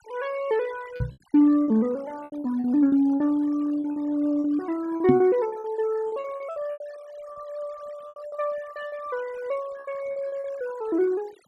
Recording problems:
denoising artefacts; signal-to-artefact ratio 23 dB
packet loss; 11% of the sound replaced, filled with repeated pitch periods
microphone thump; at 1 s and at 5 s; peak +9 dB vs average level

